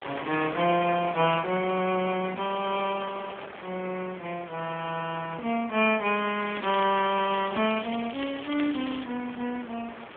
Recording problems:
telephone audio; 190 Hz to 3.3 kHz, AMR-NB
wind noise; below 2.3 kHz, SNR 13 dB
crackling; from 6.5 to 9 s; loose cable, SNR 12 dB

